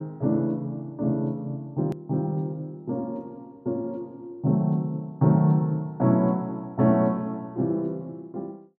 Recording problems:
edit click; at 2 s

